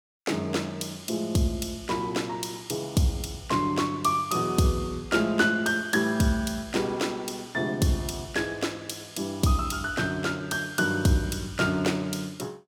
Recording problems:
none

